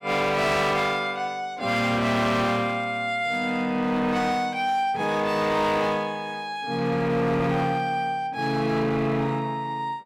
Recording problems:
distortion; hard clipping, uneven, signal-to-distortion ratio 11 dB

